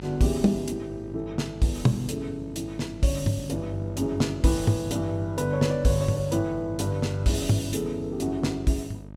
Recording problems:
hum; 50 Hz, harmonics up to 1 kHz, SNR 13 dB

